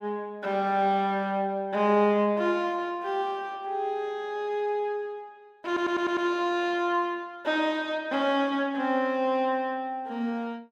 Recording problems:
stutter; at 5.5 s

